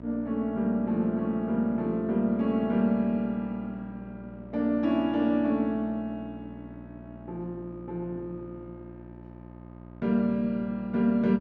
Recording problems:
hum; 60 Hz, harmonics up to 1.3 kHz, SNR 18 dB

